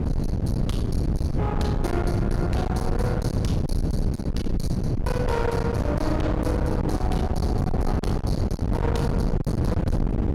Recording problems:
distorted audio; hard clipping, uneven, signal-to-distortion ratio 7 dB
wind on the microphone; below 250 Hz, SNR -3 dB

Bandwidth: 16 kHz